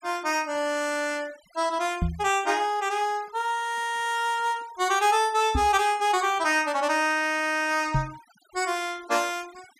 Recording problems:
noise reduction artefacts; signal-to-artefact ratio 23 dB
knock on the microphone; at 2 s, at 5.5 s and at 8 s; peak +3 dB vs average level

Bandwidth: 15 kHz